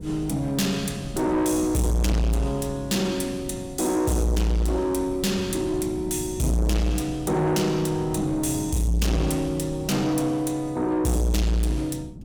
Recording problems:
distortion; soft clipping, signal-to-distortion ratio 7 dB
wind on the microphone; below 220 Hz, SNR 15 dB

